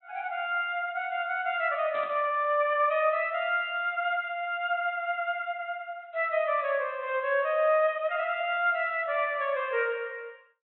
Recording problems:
treble cut off; nothing above 3.9 kHz
static burst; at 2 s; peak -13 dB vs average level

